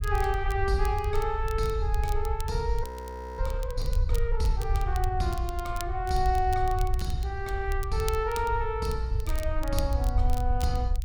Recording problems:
low-frequency rumble; below 68 Hz, SNR 1 dB
crackle; vinyl, SNR 16 dB
audio freezing; at 3 s for 0.5 s

